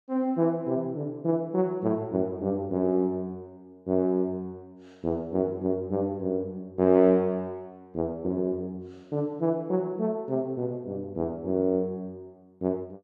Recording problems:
none

